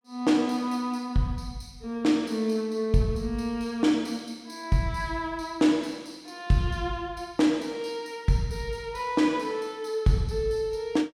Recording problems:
none

